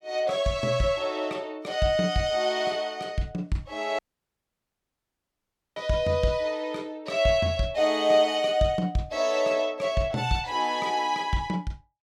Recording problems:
dropout; at 4 s for 2 s

